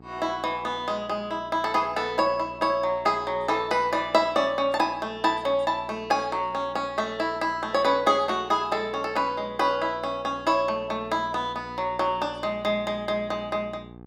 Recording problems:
electrical hum; 60 Hz, harmonics up to 1.3 kHz, SNR 21 dB

